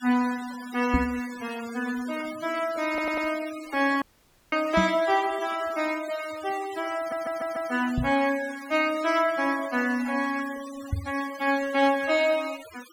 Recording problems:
noise reduction artefacts; signal-to-artefact ratio 16 dB
microphone thump; 4 times, first at 1 s; peak +4 dB vs average level
stutter; at 3 s and at 7 s
dropout; at 4 s for 0.5 s

